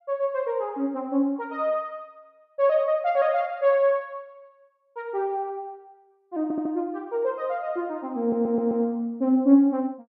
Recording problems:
stutter; at 6.5 s and at 8 s

